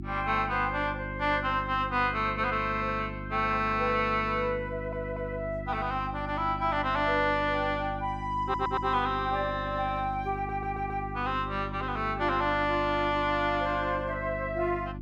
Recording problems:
electrical hum; 50 Hz, harmonics up to 350 Hz, SNR 10 dB
audio stuttering; at 4.5 s, at 8.5 s and at 10 s

